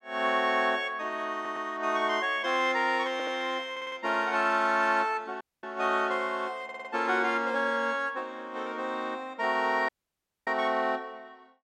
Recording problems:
audio stuttering; 4 times, first at 1.5 s
dropout; at 5.5 s and at 10 s for 0.5 s

